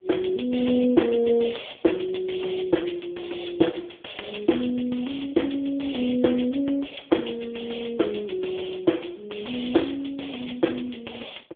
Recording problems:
phone line; 220 Hz to 3.5 kHz, AMR-NB

